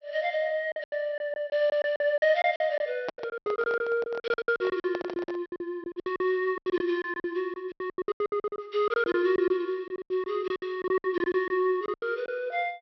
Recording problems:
treble missing; nothing above 5.9 kHz
packet loss; 20% of the sound replaced, filled with silence
handling noise; from 3 to 5.5 s; peak -1 dB vs average level

